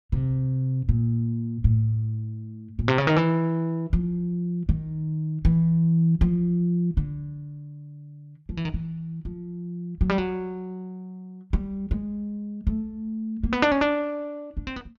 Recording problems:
none

